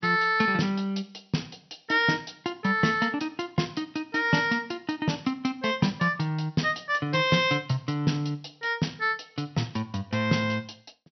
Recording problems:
treble missing; nothing above 5.9 kHz

